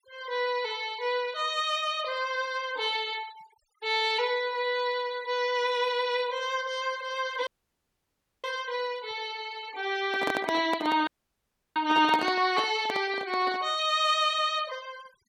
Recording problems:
noise reduction artefacts; signal-to-artefact ratio 21 dB
audio cutting out; at 7.5 s for 1 s and at 11 s for 0.5 s
microphone handling noise; from 10 to 14 s; peak +1 dB vs average level

